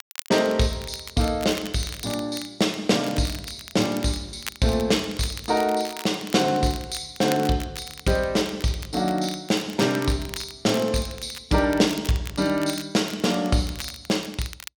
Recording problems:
crackle; vinyl, SNR 15 dB

